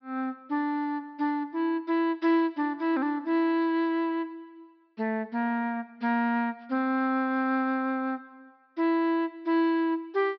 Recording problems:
low-pass filter; nothing above 5.5 kHz

